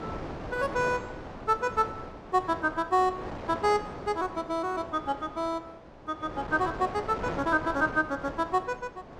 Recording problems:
wind on the microphone; below 950 Hz, SNR 11 dB

